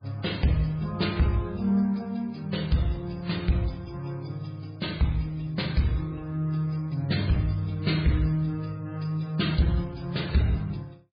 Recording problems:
lossy codec; MP3, then MP3, log-spectral distance 4 dB, nothing above 4.6 kHz
distortion; soft clipping, signal-to-distortion ratio 11 dB

